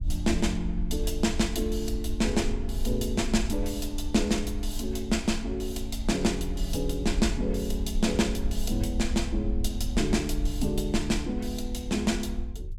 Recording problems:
rumble; below 60 Hz, SNR 5 dB

